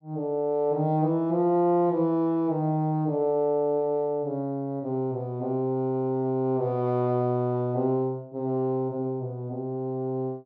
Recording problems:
none

